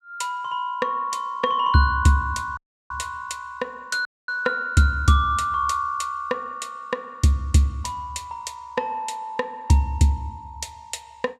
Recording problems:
dropout; at 2.5 s and at 4 s

